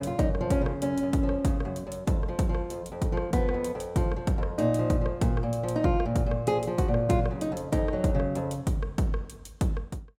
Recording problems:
none

